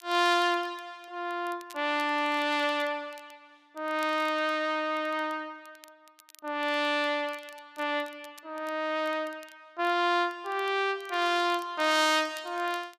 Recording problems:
crackling; vinyl, SNR 27 dB

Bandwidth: 14.5 kHz